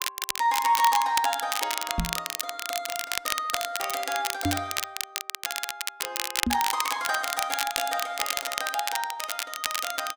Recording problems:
crackle; vinyl, SNR 1 dB
microphone thump; at 2 s, at 4.5 s and at 6.5 s; peak +6 dB vs average level

